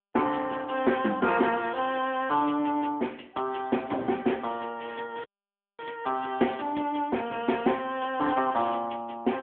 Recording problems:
phone line; 240 Hz to 3.4 kHz, AMR-NB
audio cutting out; at 5 s for 0.5 s

